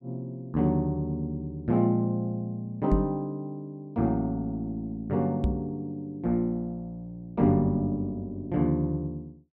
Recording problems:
microphone thump; at 3 s and at 5.5 s; peak +6 dB vs average level

